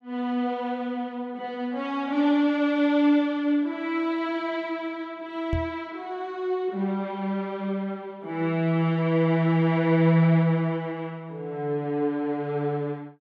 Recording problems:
microphone bump; at 5.5 s; peak 0 dB vs average level

